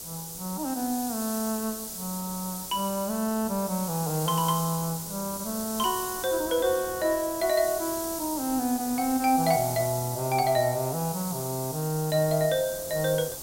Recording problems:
hiss; SNR 7 dB
wind on the microphone; below 760 Hz, SNR 21 dB

